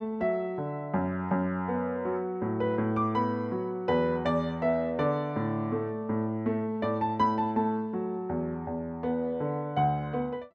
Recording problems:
none

